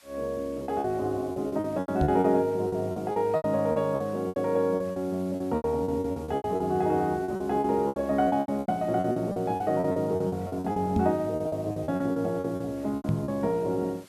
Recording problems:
hiss; SNR 26 dB
lost packets; 18% of the sound replaced, filled with repeated pitch periods
knock on the microphone; at 2 s, at 11 s and at 13 s; peak +5 dB vs average level

